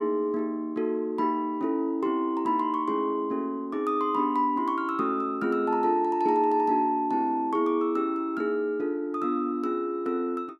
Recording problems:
none

